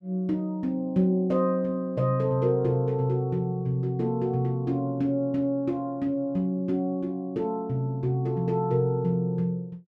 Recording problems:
none

